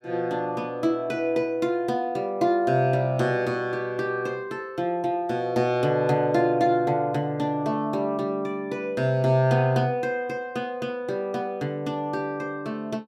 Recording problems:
none

